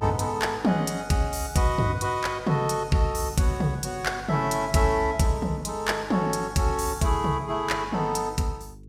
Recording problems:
electrical hum; 50 Hz, harmonics up to 450 Hz, SNR 19 dB

